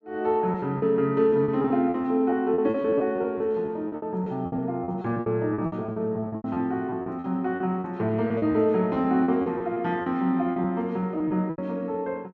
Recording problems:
packet loss; 15% of the sound replaced, filled with repeated pitch periods

